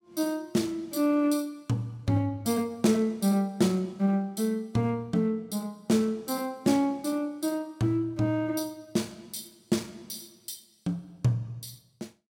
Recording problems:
none

